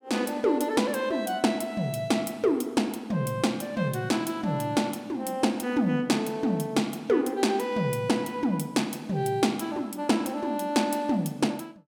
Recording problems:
none

